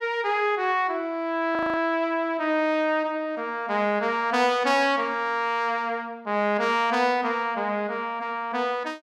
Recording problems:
frozen audio; at 1.5 s

